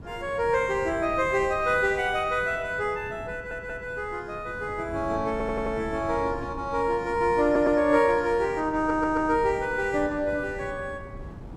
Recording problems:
wind on the microphone; below 280 Hz, SNR 16 dB
audio stuttering; 4 times, first at 3.5 s

